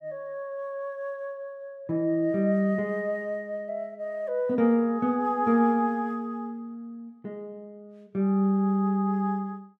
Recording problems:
none

